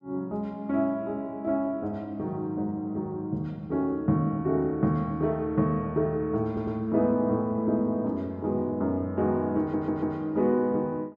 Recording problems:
stutter; at 6.5 s and at 9.5 s

